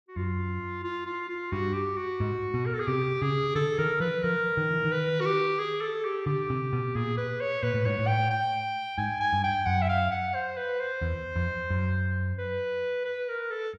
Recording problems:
none

